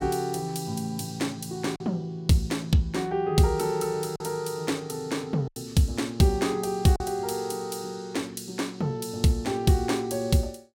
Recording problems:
packet loss; 1.9% of the sound replaced, filled with silence

